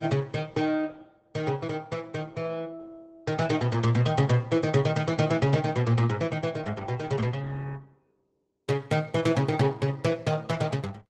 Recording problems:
lossy compression; Opus, log-spectral distance 3 dB, nothing above 12 kHz

